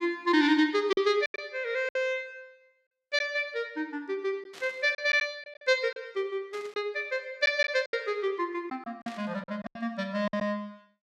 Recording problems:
lost packets; 8% of the sound replaced, filled with silence
burst of static; at 4.5 s, at 6.5 s and at 9 s; peak -12 dB vs average level

